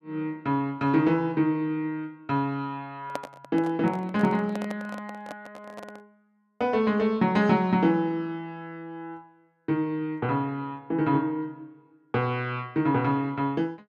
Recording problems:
handling noise; from 3 to 6 s; peak -2 dB vs average level

